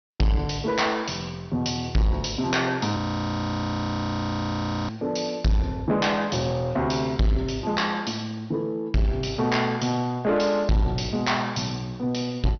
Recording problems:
low-pass filter; nothing above 6 kHz
distortion; soft clipping, signal-to-distortion ratio 7 dB
audio freezing; at 3 s for 2 s

